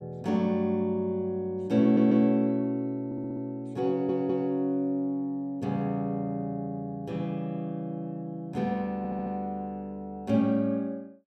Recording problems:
audio stuttering; 4 times, first at 2 s

